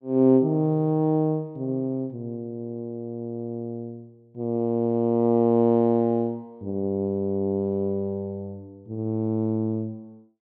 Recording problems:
none

